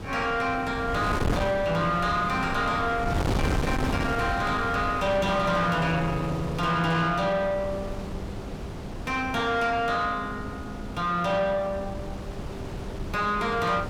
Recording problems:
distortion; soft clipping, signal-to-distortion ratio 10 dB
wind on the microphone; below 610 Hz, SNR 7 dB

